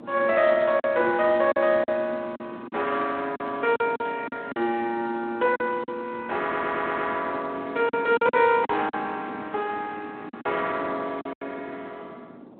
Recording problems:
telephone audio; 190 Hz to 3.5 kHz, Speex
wind on the microphone; below 460 Hz, SNR 17 dB
packet loss; 8% of the sound replaced, filled with silence
audio stuttering; at 6.5 s

